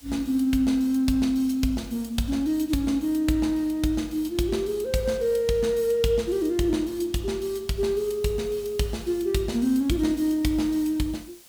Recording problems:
background hiss; slope 0 dB per octave, SNR 27 dB

